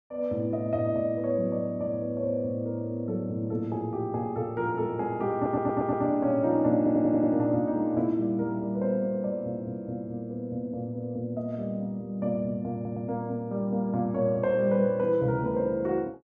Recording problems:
stutter; at 5.5 s, at 7 s and at 13 s

